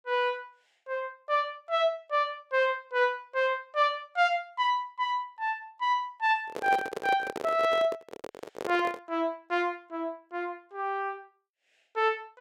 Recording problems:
handling noise; from 6.5 to 9 s; peak 0 dB vs average level

